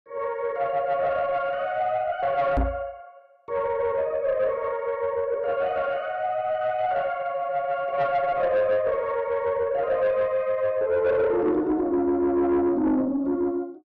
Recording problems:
distortion; soft clipping, signal-to-distortion ratio 11 dB
microphone bump; at 2.5 s; peak +3 dB vs average level

